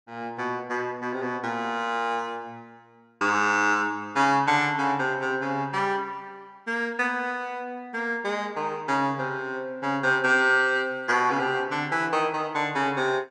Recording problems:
none

